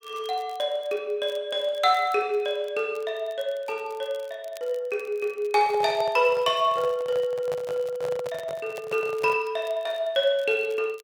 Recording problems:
crackling; vinyl, SNR 27 dB
microphone handling noise; from 5.5 to 9.5 s; peak -6 dB vs average level

